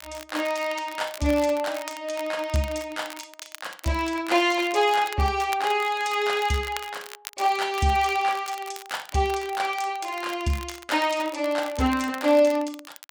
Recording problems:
crackle; vinyl, SNR 17 dB

